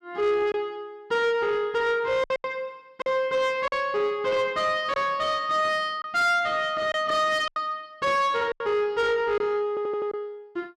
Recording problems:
distorted audio; soft clipping, signal-to-distortion ratio 12 dB
lost packets; 5% of the sound replaced, filled with silence
stutter; at 9.5 s

